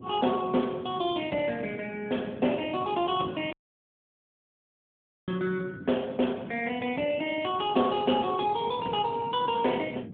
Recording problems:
phone line; 170 Hz to 3.6 kHz, AMR-NB
wind noise; below 320 Hz, SNR 15 dB
audio cutting out; at 3.5 s for 2 s

